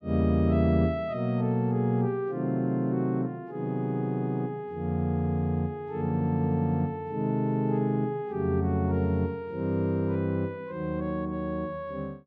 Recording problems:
none

